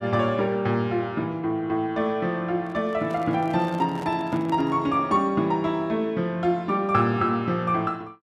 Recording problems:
handling noise; from 2.5 to 5 s; peak -10 dB vs average level

